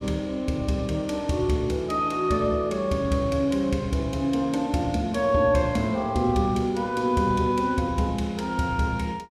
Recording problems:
none

